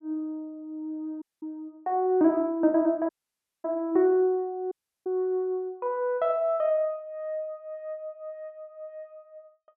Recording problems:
audio cutting out; at 1 s, at 3 s for 0.5 s and at 4.5 s

